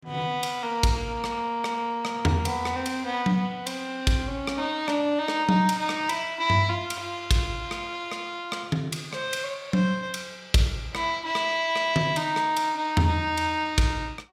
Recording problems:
none

